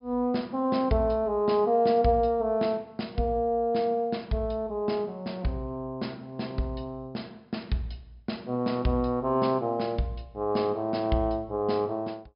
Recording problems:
treble missing; nothing above 5.5 kHz

